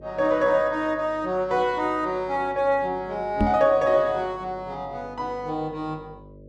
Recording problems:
electrical hum; 50 Hz, harmonics up to 600 Hz, SNR 22 dB
microphone bump; at 3.5 s; peak +5 dB vs average level

